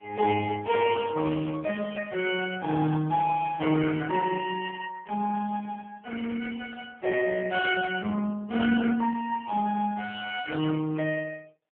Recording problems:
telephone audio; 170 Hz to 2.8 kHz, AMR-NB

